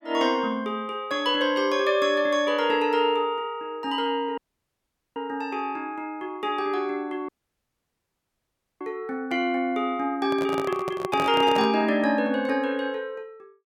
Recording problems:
audio cutting out; at 4.5 s for 1 s and at 7.5 s for 1.5 s
microphone handling noise; from 10 to 12 s; peak -1 dB vs average level

